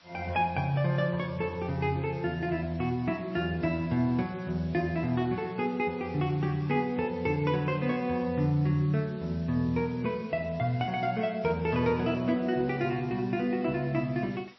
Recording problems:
codec artefacts; MP3, log-spectral distance 4 dB, nothing above 5 kHz
hiss; slope 0 dB per octave, SNR 26 dB

